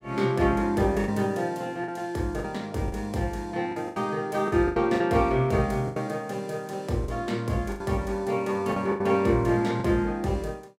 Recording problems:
packet loss; 8% of the sound replaced, filled with the last packet

